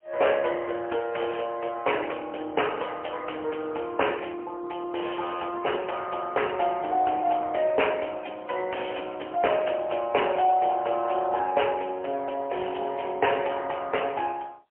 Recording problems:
telephone audio; 340 Hz to 3.1 kHz, AMR-NB, then MP3

